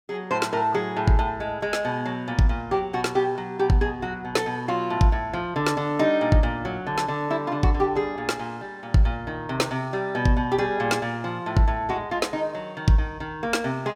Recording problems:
none

